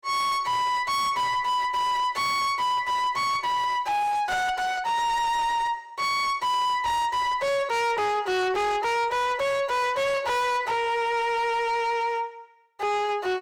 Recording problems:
distorted audio; soft clipping, signal-to-distortion ratio 7 dB

